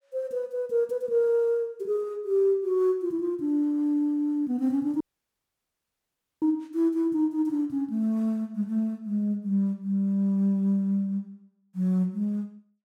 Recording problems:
dropout; at 5 s for 1.5 s

